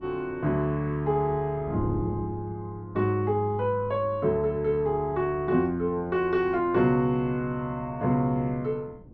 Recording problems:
wind on the microphone; below 290 Hz, SNR 17 dB

